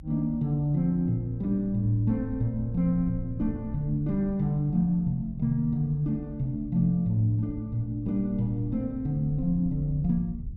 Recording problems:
low-frequency rumble; below 84 Hz, SNR 15 dB

